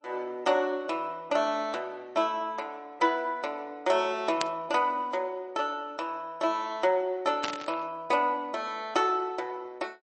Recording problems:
codec artefacts; MP3, log-spectral distance 2 dB, nothing above 8.2 kHz
burst of static; at 4.5 s and at 7.5 s; peak +3 dB vs average level

